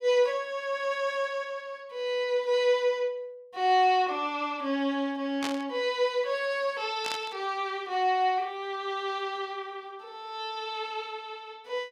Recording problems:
burst of static; at 5.5 s and at 7 s; peak -1 dB vs average level

